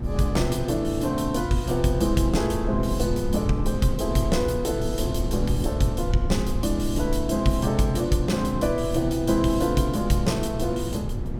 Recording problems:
electrical hum; 60 Hz, harmonics up to 960 Hz, SNR 12 dB
rumble; below 76 Hz, SNR 8 dB
wind on the microphone; below 240 Hz, SNR 13 dB

